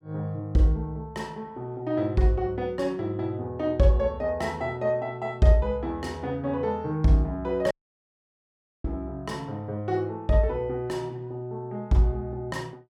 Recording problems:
audio cutting out; at 7.5 s for 1 s

